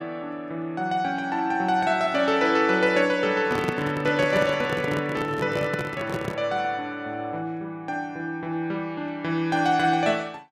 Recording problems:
handling noise; from 3.5 to 6.5 s; peak +1 dB vs average level

